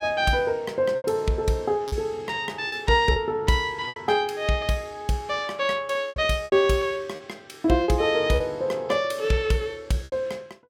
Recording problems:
lost packets; 6% of the sound replaced, filled with repeated pitch periods

